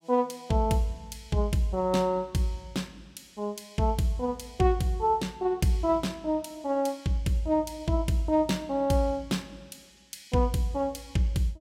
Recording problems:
none

